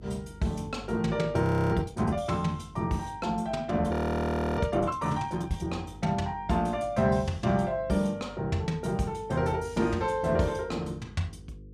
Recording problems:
hum; 50 Hz, harmonics up to 500 Hz, SNR 20 dB
frozen audio; at 1.5 s and at 4 s for 0.5 s

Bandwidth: 14 kHz